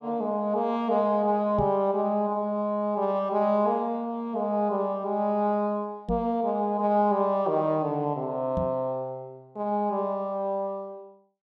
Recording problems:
microphone thump; at 1.5 s, at 6 s and at 8.5 s; peak -1 dB vs average level

